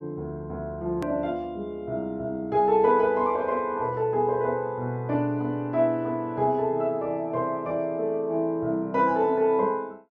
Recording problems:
hard cut with a click; at 1 s

